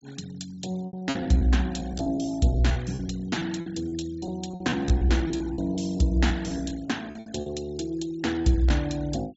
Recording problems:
low-pass filter; nothing above 8 kHz
noise reduction artefacts; signal-to-artefact ratio 22 dB
packet loss; 13% of the sound replaced, filled with repeated pitch periods

